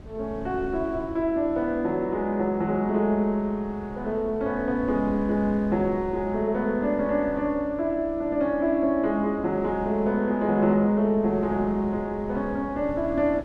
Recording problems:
wind noise; below 230 Hz, SNR 18 dB

